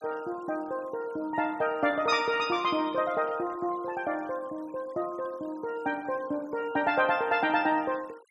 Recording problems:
denoising artefacts; signal-to-artefact ratio 25 dB

